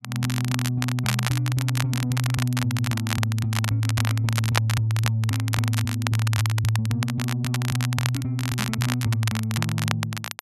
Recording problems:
crackling; vinyl, SNR 6 dB

